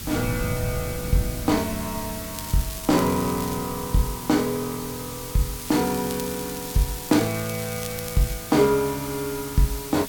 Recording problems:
hiss; slope +2 dB per octave, SNR 9 dB
wind noise; below 160 Hz, SNR 15 dB
crackle; from 2.5 to 3.5 s and from 5.5 to 8.5 s; loose cable, SNR 13 dB

